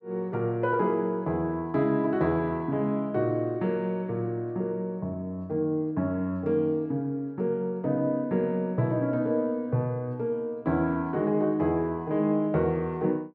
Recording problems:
none

